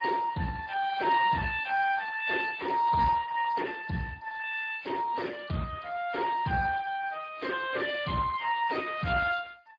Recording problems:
lossy compression; MP3, then Speex, log-spectral distance 5 dB

